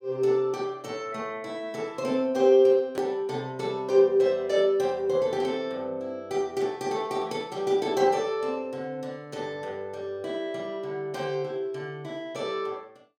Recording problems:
edit click; at 3 s

